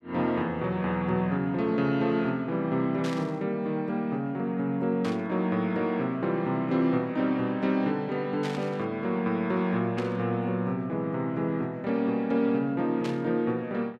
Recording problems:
static burst; 5 times, first at 3 s; peak -6 dB vs average level

